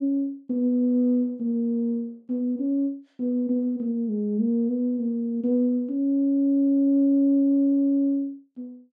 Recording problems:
none

